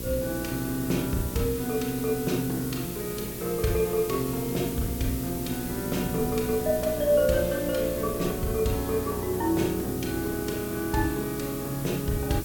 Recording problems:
hum; 60 Hz, harmonics up to 1 kHz, SNR 10 dB
hiss; slope +4 dB per octave, SNR 9 dB
wind noise; below 250 Hz, SNR 17 dB

